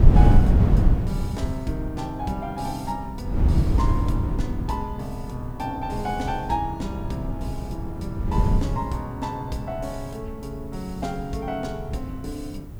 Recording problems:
background hiss; slope -2 dB per octave, SNR 28 dB
wind on the microphone; below 130 Hz, SNR -6 dB

